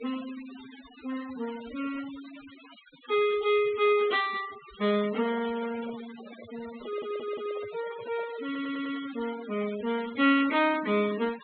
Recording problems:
low-pass filter; nothing above 4 kHz
denoising artefacts; signal-to-artefact ratio 16 dB
handling noise; from 5 to 8.5 s; peak -13 dB vs average level
audio stuttering; at 7 s and at 8.5 s

